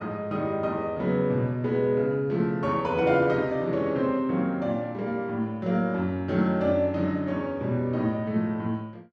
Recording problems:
none

